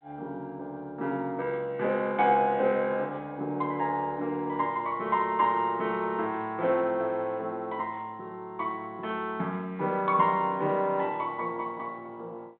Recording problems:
telephone audio; 170 Hz to 3.7 kHz, G.726

